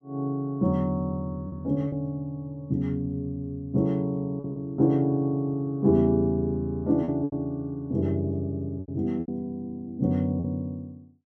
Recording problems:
lost packets; 4% of the sound replaced, filled with repeated pitch periods

